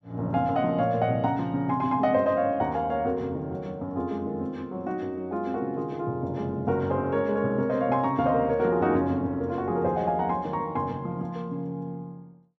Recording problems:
none

